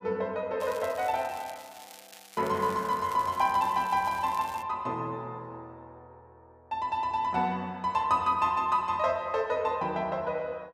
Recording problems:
crackle; from 0.5 to 4.5 s; loose cable, SNR 19 dB

